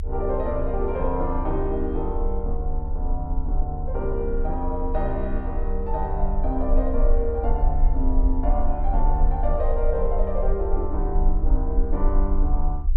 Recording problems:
rumble; below 46 Hz, strongest tone 26 Hz, SNR -1 dB

